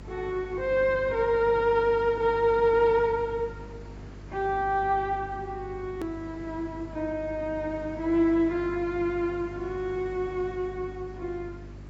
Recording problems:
codec artefacts; AAC, log-spectral distance 2 dB
hum; 50 Hz, harmonics up to 400 Hz, SNR 17 dB
hiss; slope -6 dB per octave, SNR 22 dB
hard cut with a click; at 6 s

